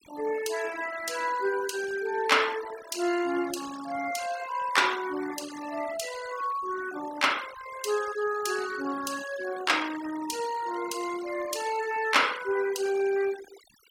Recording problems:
noise reduction artefacts; signal-to-artefact ratio 13 dB

